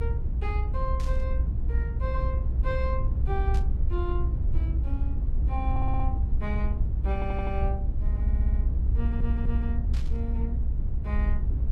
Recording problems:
low-frequency rumble; below 66 Hz, SNR -9 dB
burst of static; at 1 s, at 3.5 s and at 10 s; peak -5 dB vs average level
stutter; 4 times, first at 5.5 s

